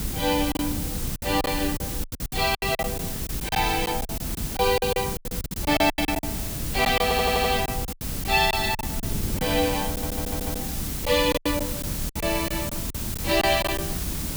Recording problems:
background hiss; slope -1 dB per octave, SNR 6 dB
wind noise; below 200 Hz, SNR 8 dB
packet loss; 14% of the sound replaced, filled with silence
audio stuttering; at 7 s and at 10 s

